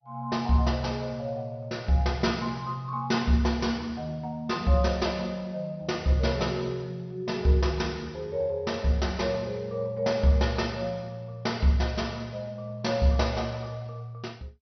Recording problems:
codec artefacts; MP2, log-spectral distance 3 dB, nothing above 5.8 kHz

